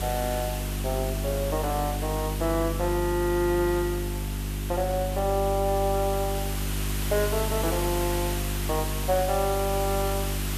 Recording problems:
hum; 50 Hz, harmonics up to 400 Hz, SNR 3 dB
background hiss; slope -1 dB per octave, SNR 7 dB

